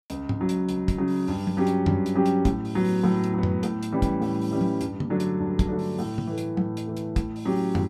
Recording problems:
none

